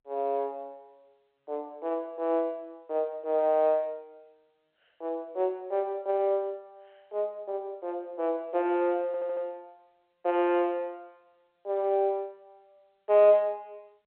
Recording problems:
phone line; 320 Hz to 3.3 kHz, G.711
audio stuttering; at 9 s

